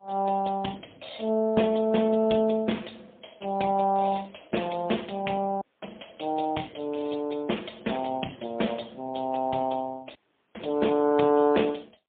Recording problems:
phone line; 150 Hz to 3.6 kHz, AMR-NB, then MP3
dropout; at 5.5 s and at 10 s

